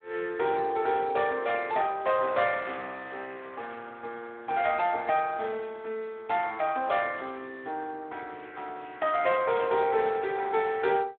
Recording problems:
phone line; 280 Hz to 3.6 kHz, Speex

